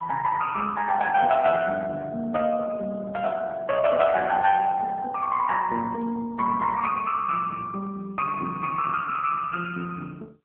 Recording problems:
phone line; 190 Hz to 3.3 kHz, AMR-NB

